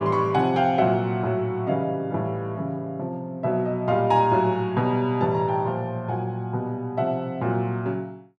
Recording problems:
none

